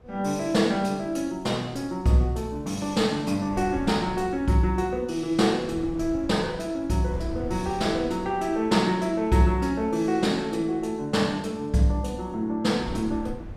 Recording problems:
wind noise; below 150 Hz, SNR 17 dB

